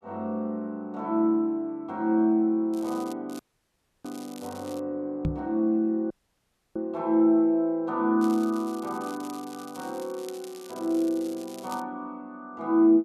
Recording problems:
crackle; at 2.5 s, from 3.5 to 5 s and from 8 to 12 s; loose cable, SNR 21 dB
audio cutting out; at 3.5 s for 0.5 s and at 6 s for 0.5 s
microphone bump; at 5.5 s; peak +2 dB vs average level

